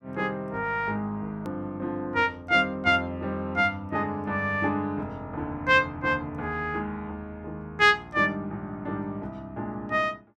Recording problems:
click at an edit; at 1.5 s

